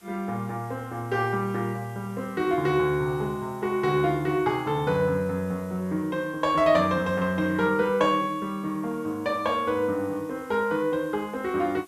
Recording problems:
hiss; slope -2 dB per octave, SNR 27 dB

